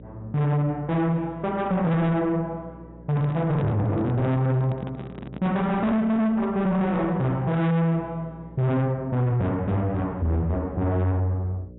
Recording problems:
low-pass filter; nothing above 3.8 kHz
distortion; soft clipping, signal-to-distortion ratio 6 dB
hum; 60 Hz, harmonics up to 600 Hz, SNR 22 dB
microphone handling noise; from 3 to 6 s; peak -4 dB vs average level

